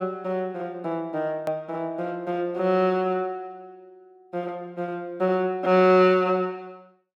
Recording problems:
edit click; at 1.5 s

